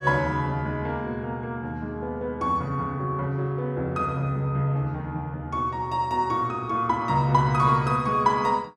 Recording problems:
none

